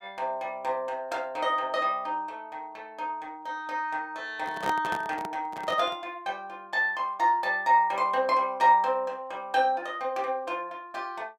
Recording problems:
handling noise; from 4.5 to 6 s; peak 0 dB vs average level

